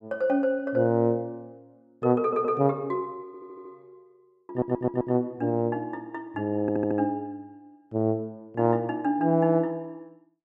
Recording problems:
audio stuttering; 4 times, first at 2 s

